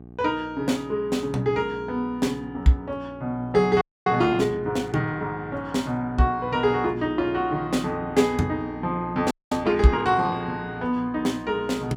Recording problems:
mains hum; 60 Hz, harmonics up to 1.1 kHz, SNR 17 dB
frozen audio; at 4 s and at 9.5 s

